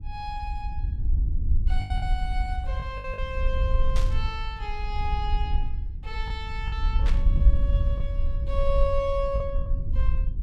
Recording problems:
low-frequency rumble; below 60 Hz, SNR -5 dB
packet loss; 5% of the sound replaced, filled with the last packet
burst of static; at 4 s and at 7 s; peak 0 dB vs average level

